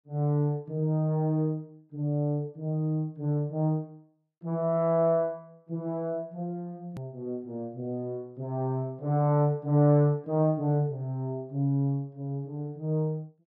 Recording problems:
click at an edit; at 7 s

